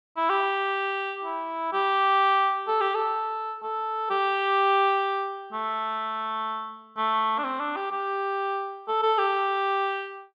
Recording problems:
none

